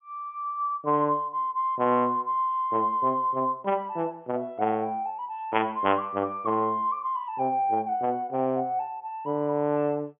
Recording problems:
treble missing; nothing above 3.3 kHz

